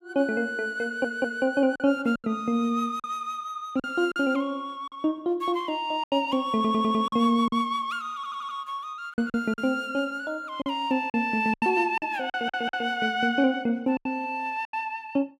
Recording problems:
lost packets; 7% of the sound replaced, filled with silence
stutter; 4 times, first at 1 s

